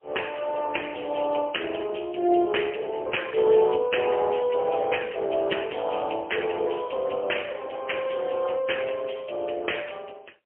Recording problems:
phone line; 300 Hz to 3.2 kHz, AMR-NB, then MP3

